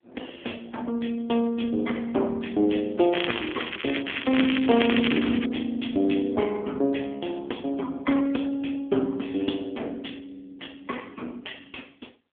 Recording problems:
telephone audio; 190 Hz to 3.5 kHz, AMR-NB
crackling; from 3 to 5.5 s; loose cable, SNR 5 dB

